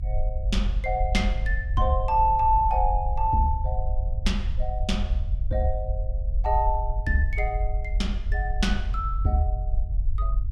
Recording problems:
rumble; below 58 Hz, strongest tone 44 Hz, SNR 2 dB

